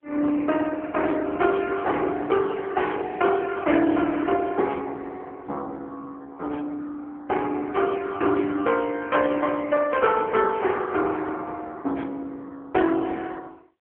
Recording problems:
telephone audio; 190 Hz to 3.3 kHz, AMR-NB

